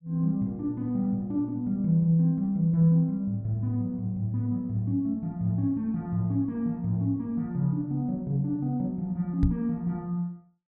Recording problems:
knock on the microphone; at 9.5 s; peak +6 dB vs average level

